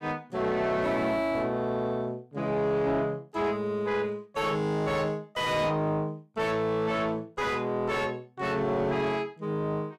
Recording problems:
distortion; soft clipping, signal-to-distortion ratio 6 dB

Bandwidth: 15.5 kHz